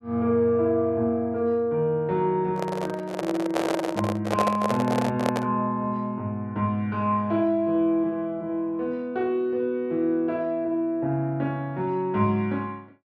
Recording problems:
microphone handling noise; from 2.5 to 5.5 s; peak +4 dB vs average level

